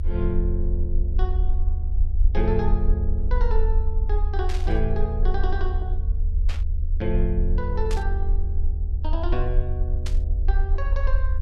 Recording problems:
hum; 60 Hz, harmonics up to 660 Hz, SNR 24 dB
rumble; below 68 Hz, strongest tone 28 Hz, SNR -5 dB
burst of static; 4 times, first at 4.5 s; peak -2 dB vs average level

